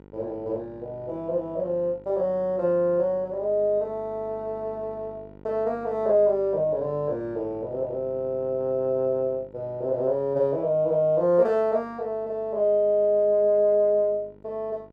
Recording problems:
hum; 50 Hz, harmonics up to 2 kHz, SNR 24 dB

